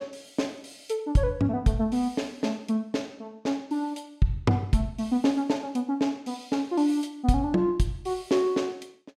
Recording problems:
none

